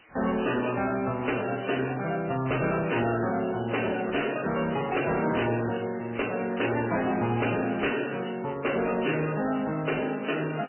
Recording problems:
lossy compression; MP3, then MP3, log-spectral distance 15 dB, nothing above 2.7 kHz
distortion; soft clipping, signal-to-distortion ratio 7 dB
hiss; SNR 27 dB
crackling; at 2 s and from 5 to 6.5 s; loose cable, SNR 20 dB

